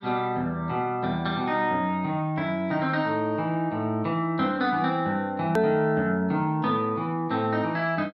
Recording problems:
hard cut with a click; at 5.5 s

